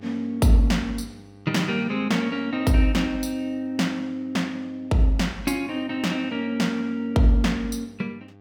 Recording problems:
electrical hum; 50 Hz, harmonics up to 1.6 kHz, SNR 25 dB

